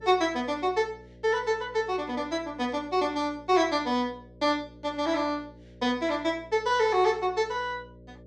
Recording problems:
mains hum; 60 Hz, harmonics up to 600 Hz, SNR 24 dB

